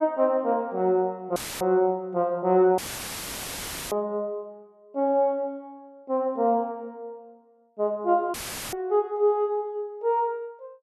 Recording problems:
audio cutting out; at 1.5 s, at 3 s for 1 s and at 8.5 s; filled with static

